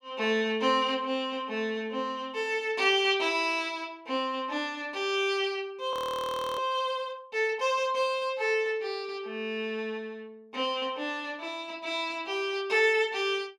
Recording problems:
frozen audio; at 6 s for 0.5 s

